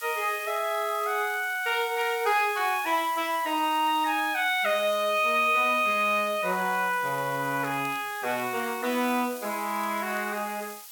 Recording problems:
background hiss; slope +4 dB per octave, SNR 16 dB
crackling; vinyl, SNR 30 dB

